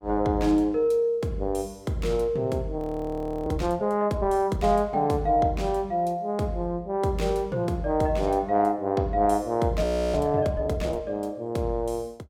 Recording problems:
frozen audio; at 3 s for 0.5 s and at 10 s

